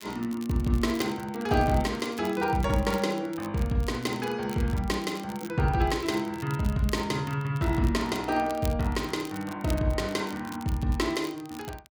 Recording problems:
crackle; vinyl, SNR 19 dB

